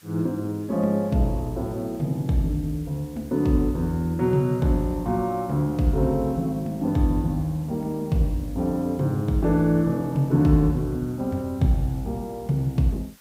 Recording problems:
background hiss; slope +1 dB per octave, SNR 27 dB

